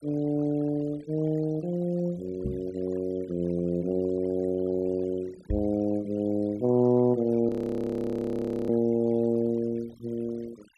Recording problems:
noise reduction artefacts; signal-to-artefact ratio 24 dB
microphone bump; at 2.5 s and at 5.5 s; peak 0 dB vs average level
frozen audio; at 7.5 s for 1 s

